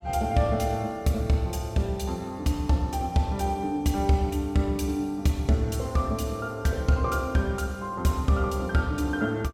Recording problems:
none

